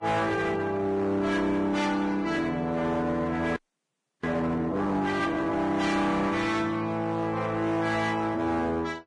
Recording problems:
lossy codec; Vorbis, log-spectral distance 2 dB, nothing above 10.4 kHz
distorted audio; hard clipping, uneven, signal-to-distortion ratio 10 dB
audio freezing; at 3.5 s for 0.5 s

